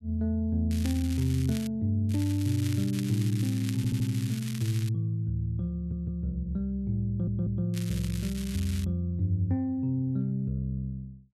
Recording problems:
crackling; at 0.5 s, from 2 to 5 s and from 7.5 to 9 s; loose cable, SNR 14 dB
audio stuttering; at 4 s, at 6 s and at 7 s

